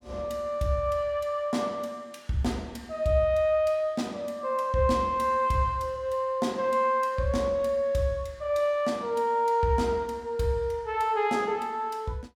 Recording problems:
none

